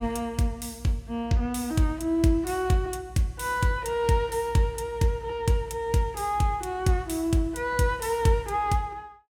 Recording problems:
none

